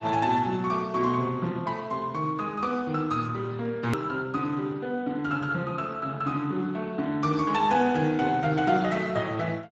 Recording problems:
lossy compression; Speex, log-spectral distance 3 dB, nothing above 13.1 kHz
hard cut with a click; at 4 s

